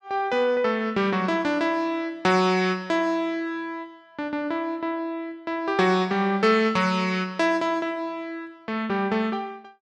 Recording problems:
none

